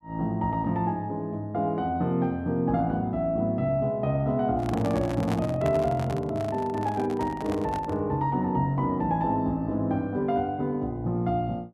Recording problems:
handling noise; from 4.5 to 8 s; peak -3 dB vs average level

